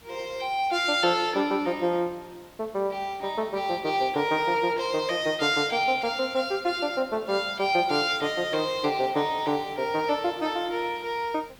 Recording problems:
hiss; slope -2 dB per octave, SNR 25 dB

